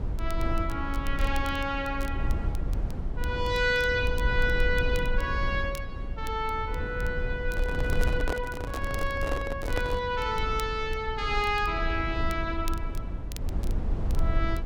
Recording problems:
rumble; below 74 Hz, SNR 3 dB
crackle; vinyl, SNR 20 dB
handling noise; from 7.5 to 10 s; peak +2 dB vs average level

